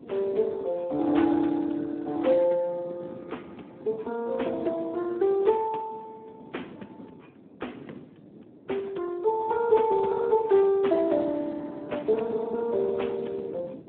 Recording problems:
telephone audio; 220 Hz to 3.5 kHz, Speex
wind on the microphone; below 400 Hz, SNR 19 dB

